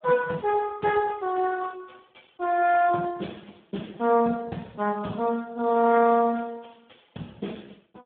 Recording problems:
phone line; 150 Hz to 2.5 kHz, Speex

